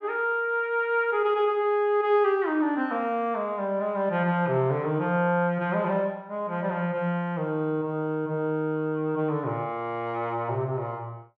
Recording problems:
none

